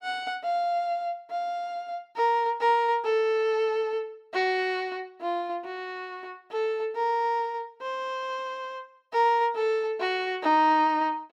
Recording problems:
none

